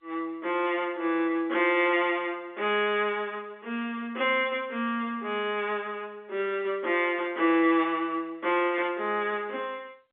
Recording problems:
phone line; 260 Hz to 3.5 kHz, G.711

